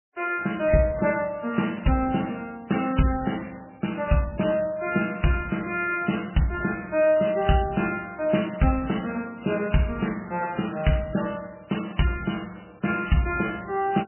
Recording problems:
lossy codec; MP3, log-spectral distance 8 dB, nothing above 3 kHz

